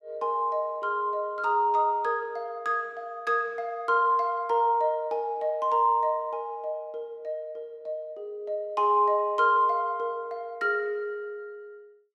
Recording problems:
none

